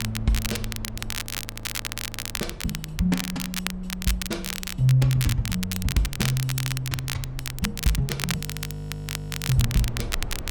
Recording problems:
low-frequency rumble; below 96 Hz, SNR 14 dB
crackling; vinyl, SNR 4 dB
audio freezing; at 1 s for 1 s and at 8.5 s for 1 s

